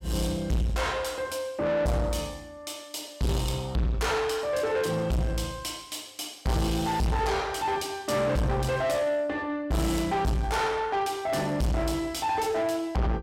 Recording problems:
distortion; soft clipping, signal-to-distortion ratio 6 dB

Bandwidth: 16 kHz